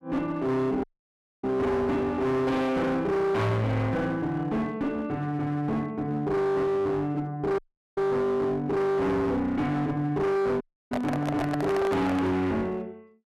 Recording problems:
distorted audio; hard clipping, uneven, signal-to-distortion ratio 6 dB
dropout; at 1 s for 0.5 s, at 7.5 s and at 11 s
microphone handling noise; from 11 to 12 s; peak +1 dB vs average level

